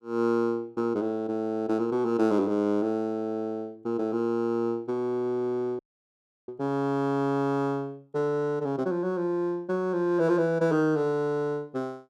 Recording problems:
dropout; at 6 s for 0.5 s

